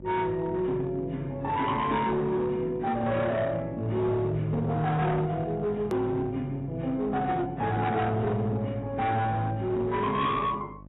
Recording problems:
codec artefacts; AAC, log-spectral distance 2 dB, nothing above 3.4 kHz
distortion; hard clipping, uneven, signal-to-distortion ratio 10 dB
hum; 50 Hz, harmonics up to 900 Hz, SNR 19 dB
edit click; at 6 s

